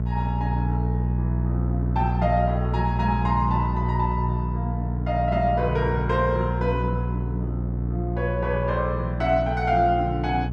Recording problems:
hum; 60 Hz, harmonics up to 480 Hz, SNR 0 dB

